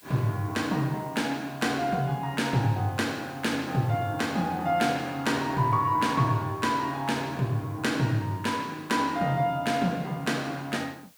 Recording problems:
hiss; slope +1 dB per octave, SNR 26 dB

